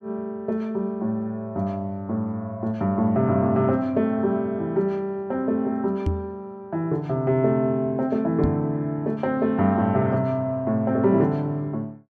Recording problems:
knock on the microphone; at 6 s and at 8.5 s; peak +3 dB vs average level

